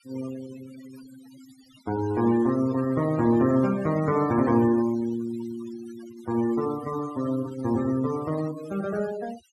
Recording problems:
noise reduction artefacts; signal-to-artefact ratio 18 dB

